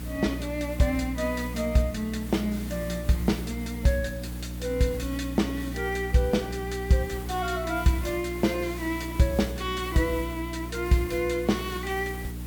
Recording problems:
hum; 60 Hz, harmonics up to 300 Hz, SNR 9 dB
background hiss; slope -4 dB per octave, SNR 16 dB

